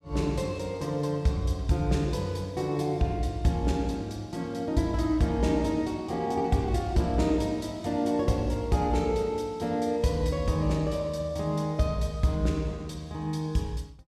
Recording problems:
none

